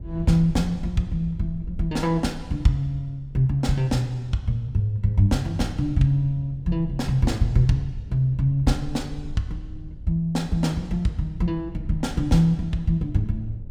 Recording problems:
low-frequency rumble; below 78 Hz, SNR 16 dB

